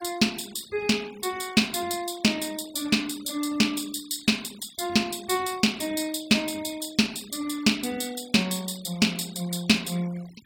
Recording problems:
denoising artefacts; signal-to-artefact ratio 21 dB

